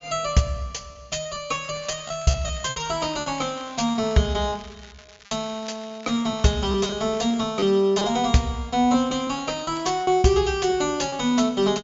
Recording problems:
treble missing; nothing above 7.3 kHz
lost packets; 8% of the sound replaced, filled with repeated pitch periods
crackle; from 1.5 to 7.5 s and from 9 to 10 s; loose cable, SNR 23 dB

